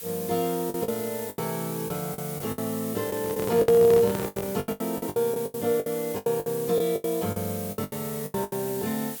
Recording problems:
hiss; slope +1 dB per octave, SNR 10 dB
lost packets; 16% of the sound replaced, filled with the last packet
handling noise; from 3 to 4.5 s; peak +1 dB vs average level

